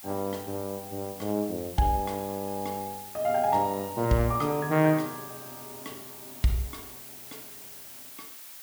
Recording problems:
background hiss; slope +2 dB per octave, SNR 13 dB

